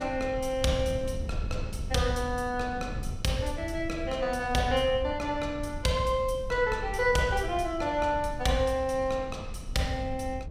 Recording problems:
wind on the microphone; below 100 Hz, SNR 10 dB

